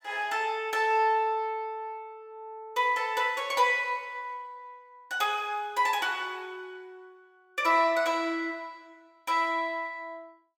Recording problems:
none

